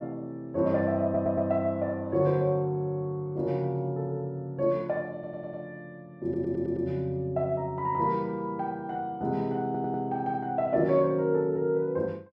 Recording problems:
audio stuttering; 4 times, first at 1 s

